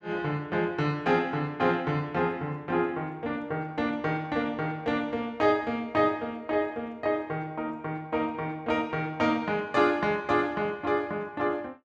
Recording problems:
none

